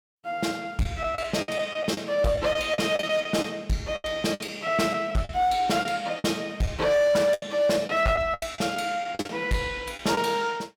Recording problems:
distorted audio; hard clipping, uneven, signal-to-distortion ratio 11 dB
packet loss; 10% of the sound replaced, filled with the last packet

